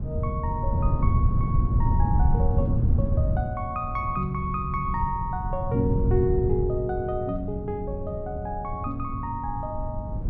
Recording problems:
wind on the microphone; below 120 Hz, SNR -1 dB

